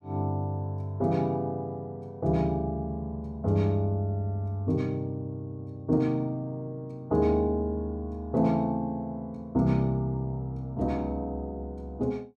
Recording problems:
none

